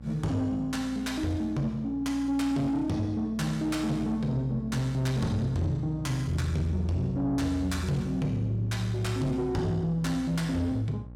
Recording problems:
distortion; soft clipping, signal-to-distortion ratio 11 dB
hum; 60 Hz, harmonics up to 600 Hz, SNR 14 dB

